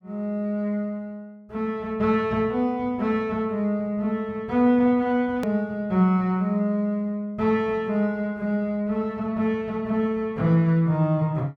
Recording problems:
click at an edit; at 5.5 s

